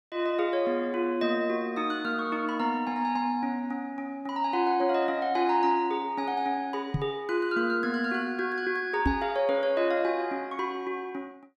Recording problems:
microphone bump; at 7 s and at 9 s; peak +5 dB vs average level

